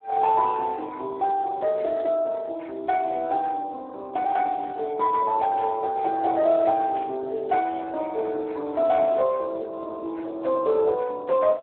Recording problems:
telephone audio; 300 Hz to 2.9 kHz, Speex
static burst; at 5.5 s, at 7 s and at 9 s; peak -16 dB vs average level

